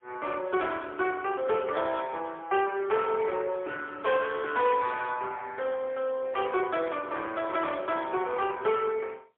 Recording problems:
phone line; 340 Hz to 3.4 kHz, AMR-NB, then MP3
distorted audio; soft clipping, signal-to-distortion ratio 13 dB

